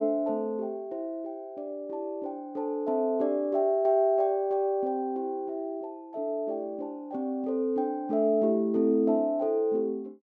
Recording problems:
none

